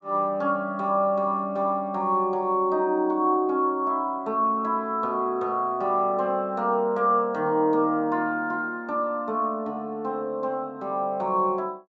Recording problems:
treble missing; nothing above 8 kHz

